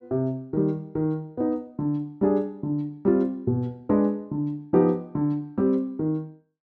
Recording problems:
none

